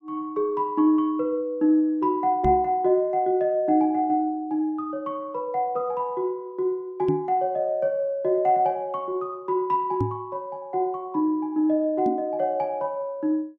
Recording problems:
microphone bump; 4 times, first at 2.5 s; peak +2 dB vs average level

